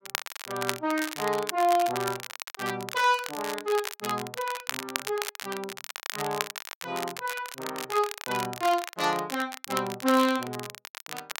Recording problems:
crackling; vinyl, SNR 7 dB

